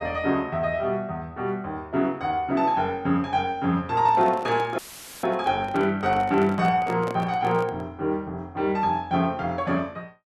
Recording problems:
handling noise; from 4 to 8 s; peak -6 dB vs average level
dropout; at 5 s; filled with static

